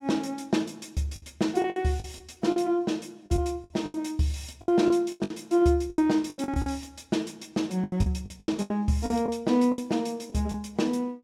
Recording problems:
lost packets; 13% of the sound replaced, filled with the last packet

